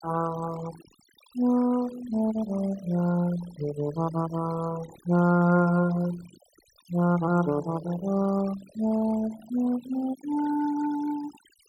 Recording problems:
noise reduction artefacts; signal-to-artefact ratio 18 dB

